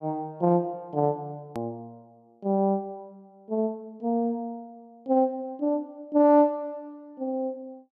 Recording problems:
edit click; at 1.5 s

